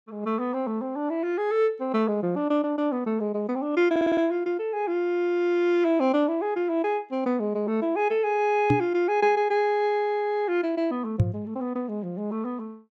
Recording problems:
audio stuttering; at 4 s
knock on the microphone; at 8.5 s and at 11 s; peak +7 dB vs average level

